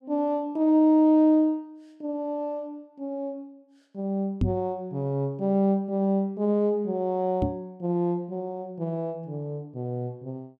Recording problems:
knock on the microphone; at 4.5 s and at 7.5 s; peak +5 dB vs average level

